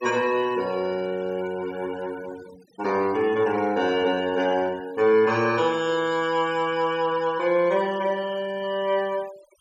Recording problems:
denoising artefacts; signal-to-artefact ratio 21 dB

